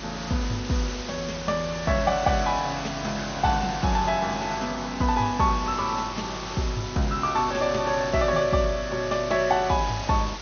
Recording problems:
lossy compression; MP2, log-spectral distance 15 dB, nothing above 6.3 kHz
electrical hum; 50 Hz, harmonics up to 600 Hz, SNR 18 dB
hiss; slope -2 dB per octave, SNR 10 dB

